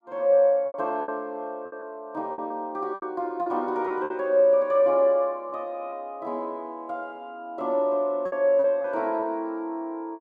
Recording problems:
lost packets; 7% of the sound replaced, filled with repeated pitch periods

